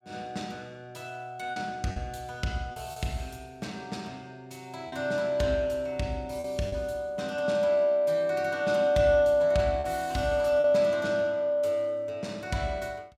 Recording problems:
lost packets; 3% of the sound replaced, filled with repeated pitch periods

